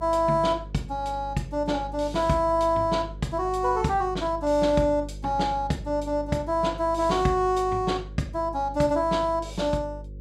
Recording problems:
mains hum; 50 Hz, harmonics up to 550 Hz, SNR 14 dB

